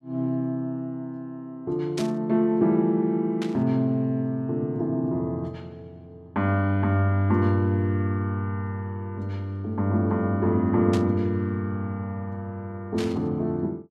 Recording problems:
static burst; 4 times, first at 2 s; peak -6 dB vs average level

